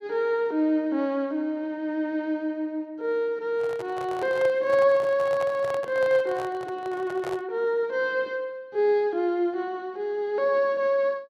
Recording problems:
handling noise; from 3.5 to 7.5 s; peak -6 dB vs average level

